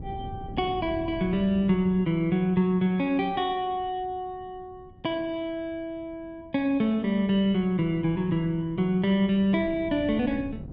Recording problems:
wind on the microphone; below 220 Hz, SNR 18 dB

